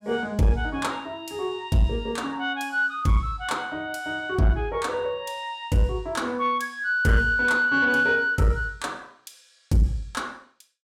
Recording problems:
distortion; soft clipping, signal-to-distortion ratio 12 dB

